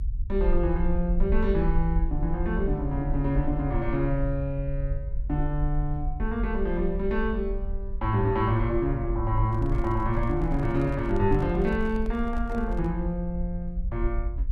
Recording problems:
rumble; below 52 Hz, SNR 4 dB
handling noise; from 9.5 to 13 s; peak -12 dB vs average level

